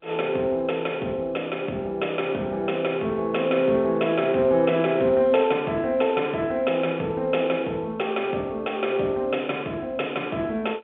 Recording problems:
phone line; 240 Hz to 3.4 kHz, G.711

